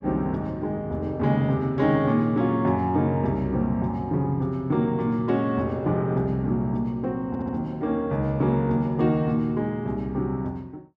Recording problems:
audio stuttering; at 7.5 s

